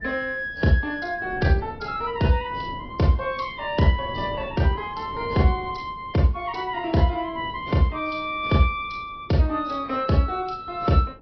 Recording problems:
treble missing; nothing above 5.2 kHz
lossy codec; AAC, log-spectral distance 2 dB
wind noise; below 390 Hz, SNR 19 dB

